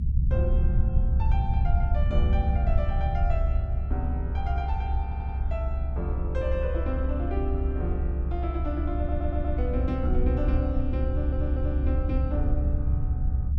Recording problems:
rumble; below 70 Hz, SNR -6 dB
stutter; at 5 s, at 9 s and at 11 s

